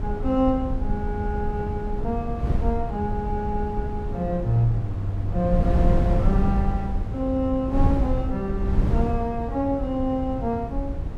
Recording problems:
wind noise; below 110 Hz, SNR 1 dB

